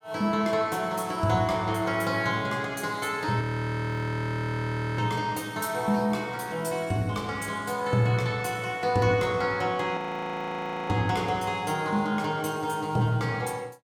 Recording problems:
audio freezing; at 3.5 s for 1.5 s and at 10 s for 1 s

